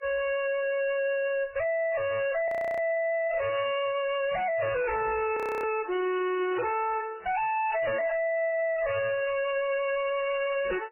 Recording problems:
codec artefacts; MP3, then MP3, log-spectral distance 5 dB, nothing above 2.8 kHz
distortion; hard clipping, uneven, signal-to-distortion ratio 4 dB
audio freezing; at 2.5 s and at 5.5 s

